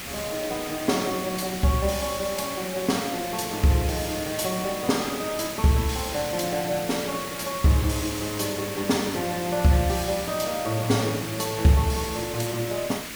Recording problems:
hiss; SNR 8 dB

